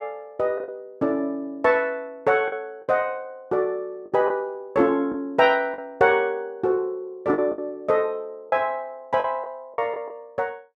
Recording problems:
lost packets; 5% of the sound replaced, filled with the last packet

